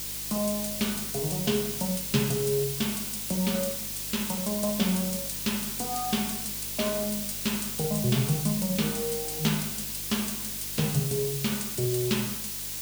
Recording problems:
electrical hum; 50 Hz, harmonics up to 600 Hz, SNR 18 dB
background hiss; slope +3 dB per octave, SNR 2 dB

